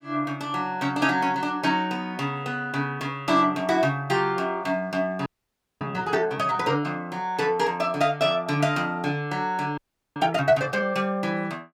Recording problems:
frozen audio; at 5.5 s for 0.5 s and at 10 s

